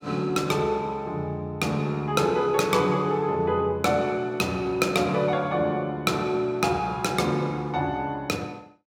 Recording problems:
none

